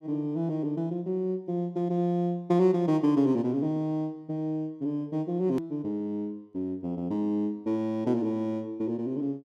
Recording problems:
click at an edit; at 5.5 s

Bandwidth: 13.5 kHz